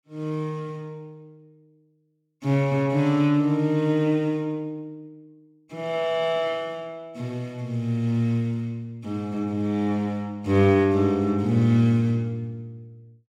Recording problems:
none

